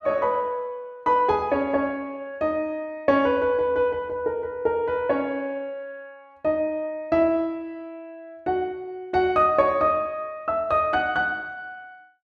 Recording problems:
none

